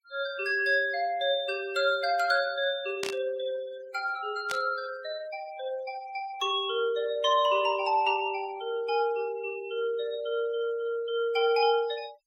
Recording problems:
noise reduction artefacts; signal-to-artefact ratio 21 dB
static burst; at 3 s and at 4.5 s; peak -1 dB vs average level

